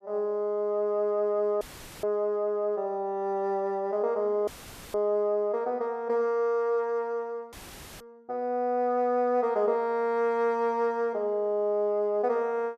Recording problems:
dropout; at 1.5 s, at 4.5 s and at 7.5 s; filled with static

